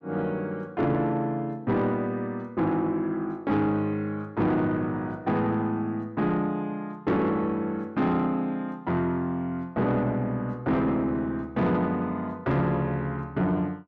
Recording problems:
distorted audio; soft clipping, signal-to-distortion ratio 11 dB

